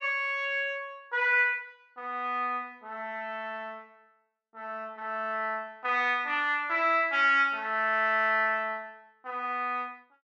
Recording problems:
none

